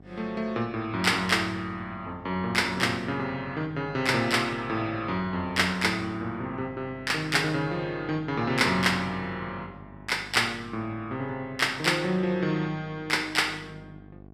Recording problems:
hum; 50 Hz, harmonics up to 1.1 kHz, SNR 21 dB

